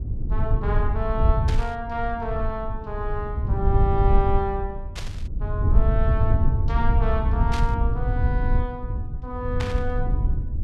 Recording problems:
low-frequency rumble; below 90 Hz, SNR -4 dB
burst of static; 4 times, first at 1.5 s; peak 0 dB vs average level

